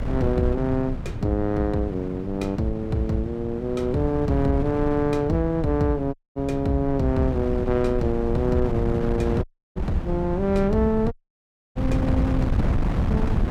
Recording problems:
low-frequency rumble; below 74 Hz, strongest tone 24 Hz, SNR 14 dB
wind noise; below 210 Hz, SNR 5 dB
audio cutting out; at 6 s, at 9.5 s and at 11 s for 0.5 s

